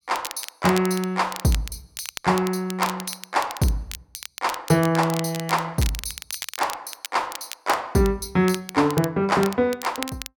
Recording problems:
crackle; vinyl, SNR 12 dB

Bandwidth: 17 kHz